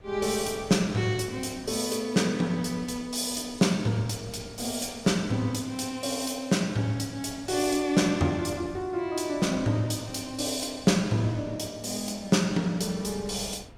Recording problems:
wind on the microphone; below 330 Hz, SNR 22 dB

